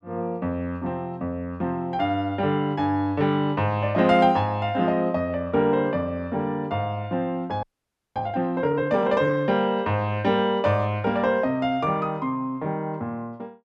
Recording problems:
frozen audio; at 7.5 s for 0.5 s

